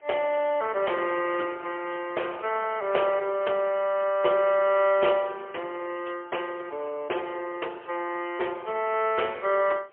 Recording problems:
telephone audio; 300 Hz to 3.2 kHz, AMR-NB, then MP3
wind on the microphone; below 1.7 kHz, SNR 22 dB

